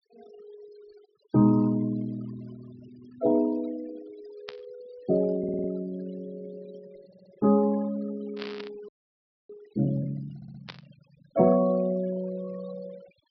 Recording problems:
low-pass filter; nothing above 5.5 kHz
denoising artefacts; signal-to-artefact ratio 22 dB
static burst; at 4.5 s, at 8.5 s and at 11 s; peak -7 dB vs average level
audio stuttering; at 5.5 s, at 7 s and at 10 s
frozen audio; at 9 s for 0.5 s

